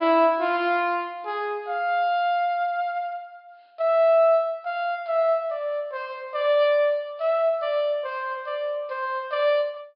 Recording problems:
low-pass filter; nothing above 5.5 kHz

